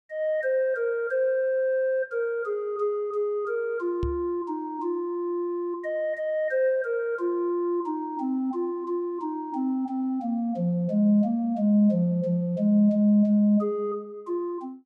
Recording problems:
microphone thump; at 4 s; peak -2 dB vs average level

